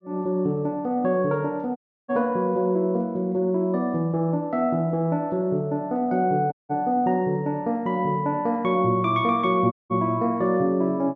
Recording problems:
audio cutting out; at 2 s, at 6.5 s and at 9.5 s

